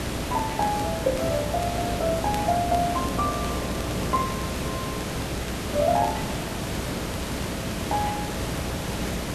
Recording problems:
electrical hum; 60 Hz, harmonics up to 660 Hz, SNR 9 dB
background hiss; slope -4 dB per octave, SNR 3 dB
crackling; vinyl, SNR 20 dB

